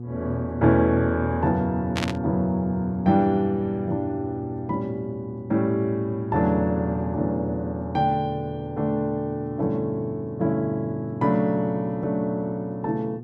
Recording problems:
hum; 60 Hz, harmonics up to 720 Hz, SNR 12 dB
burst of static; at 2 s; peak +1 dB vs average level

